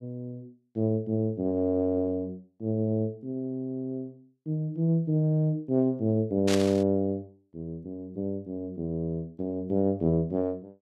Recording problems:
static burst; at 6.5 s; peak +1 dB vs average level

